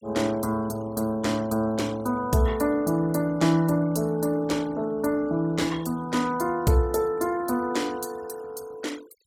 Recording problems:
denoising artefacts; signal-to-artefact ratio 23 dB

